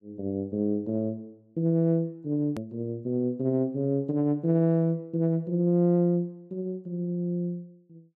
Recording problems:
edit click; at 2.5 s

